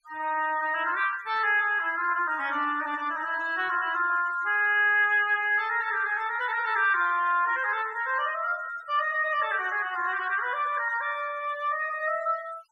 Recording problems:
noise reduction artefacts; signal-to-artefact ratio 19 dB

